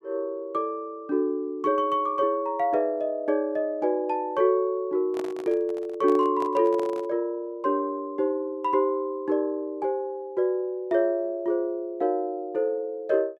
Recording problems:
microphone handling noise; from 5 to 7 s; peak -7 dB vs average level

